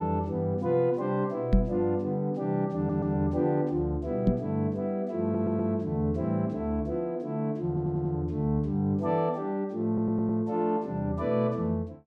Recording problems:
microphone bump; at 1.5 s and at 4.5 s; peak +8 dB vs average level
audio stuttering; 4 times, first at 3 s

